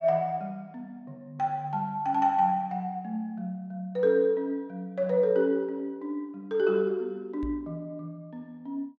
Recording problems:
knock on the microphone; at 7.5 s; peak -5 dB vs average level

